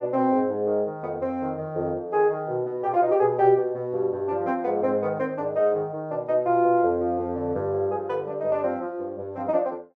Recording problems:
none

